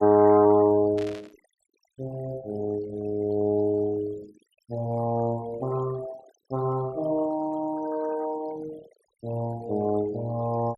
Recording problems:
denoising artefacts; signal-to-artefact ratio 21 dB
burst of static; at 1 s; peak -13 dB vs average level

